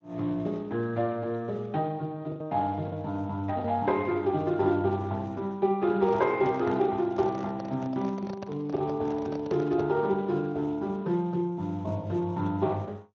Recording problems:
codec artefacts; MP2, then Speex, log-spectral distance 2 dB
packet loss; 1.8% of the sound replaced, filled with the last packet
microphone handling noise; from 6 to 10 s; peak -6 dB vs average level

